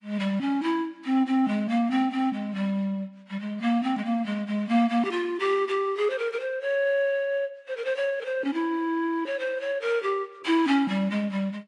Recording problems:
lossy compression; AAC, log-spectral distance 2 dB, nothing above 10.4 kHz

